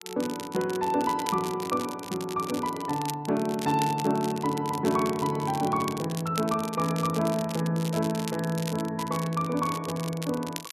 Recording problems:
crackle; vinyl, SNR 12 dB

